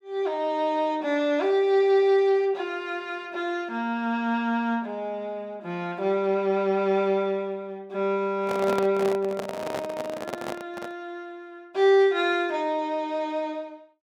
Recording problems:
microphone handling noise; from 8.5 to 11 s; peak -1 dB vs average level

